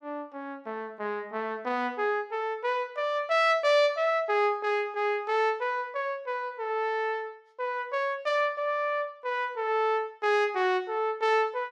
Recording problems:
none

